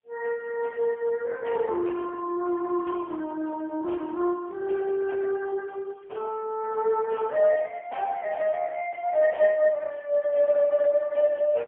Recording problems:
phone line; 320 Hz to 3.2 kHz, AMR-NB, then MP3

